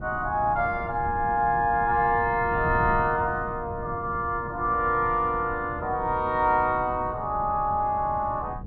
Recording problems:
wind noise; below 200 Hz, SNR 13 dB

